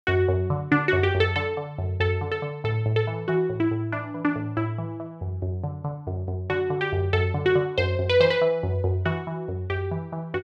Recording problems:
none

